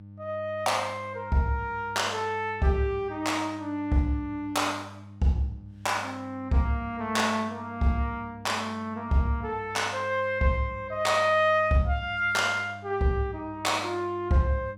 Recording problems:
hum; 50 Hz, harmonics up to 300 Hz, SNR 18 dB

